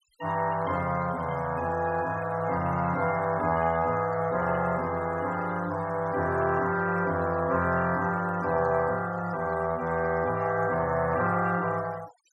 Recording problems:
noise reduction artefacts; signal-to-artefact ratio 21 dB

